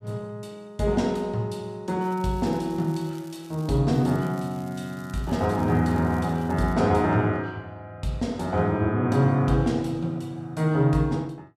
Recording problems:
crackle; from 2 to 4 s and from 4 to 6.5 s; loose cable, SNR 27 dB

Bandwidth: 14.5 kHz